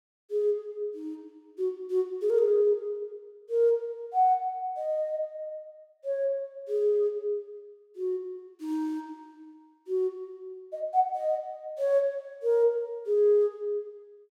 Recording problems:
none

